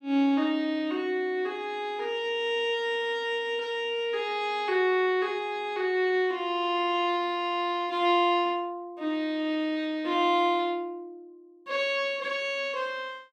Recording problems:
none

